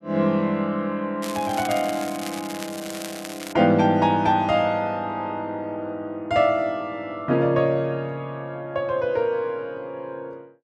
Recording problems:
crackle; from 1 to 3.5 s; loose cable, SNR 12 dB

